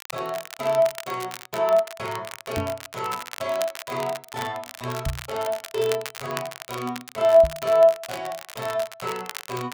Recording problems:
crackling; vinyl, SNR 13 dB
microphone bump; at 2.5 s, at 5 s and at 7.5 s; peak 0 dB vs average level

